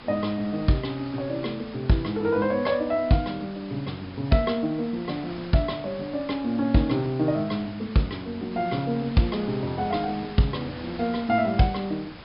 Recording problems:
low-pass filter; nothing above 5.5 kHz
hiss; SNR 16 dB

